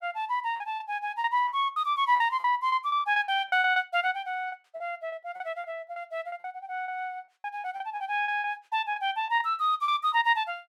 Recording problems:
packet loss; 15% of the sound replaced, filled with repeated pitch periods

